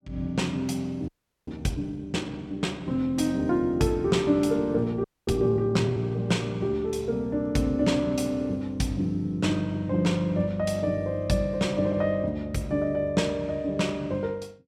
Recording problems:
audio freezing; at 1 s and at 5 s

